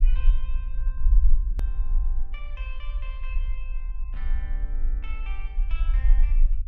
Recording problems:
rumble; below 42 Hz, SNR -18 dB
hard cut with a click; at 1.5 s

